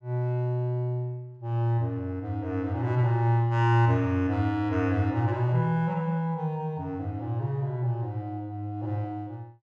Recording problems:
none

